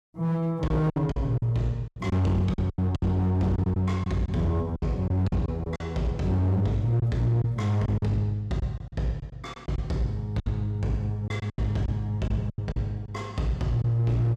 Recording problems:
distorted audio; hard clipping, signal-to-distortion ratio 11 dB
lost packets; 10% of the sound replaced, filled with silence

